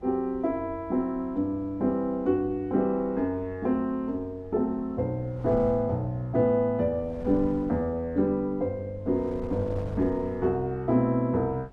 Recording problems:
wind noise; below 240 Hz, SNR 19 dB

